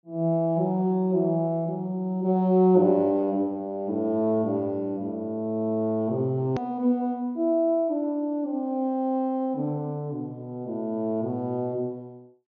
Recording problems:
treble cut off; nothing above 6.5 kHz
hard cut with a click; at 6.5 s

